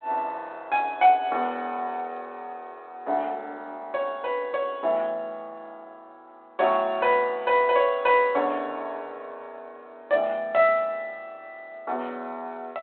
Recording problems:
phone line; 260 Hz to 3.5 kHz, G.726

